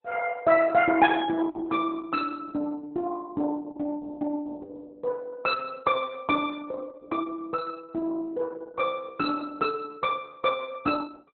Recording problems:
codec artefacts; Opus, log-spectral distance 3 dB, nothing above 4 kHz

